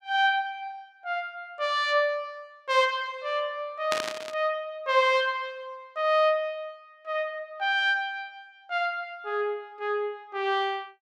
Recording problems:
static burst; at 4 s; peak +2 dB vs average level

